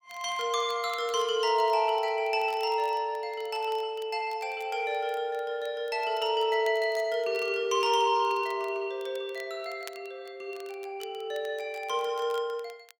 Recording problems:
crackling; vinyl, SNR 25 dB

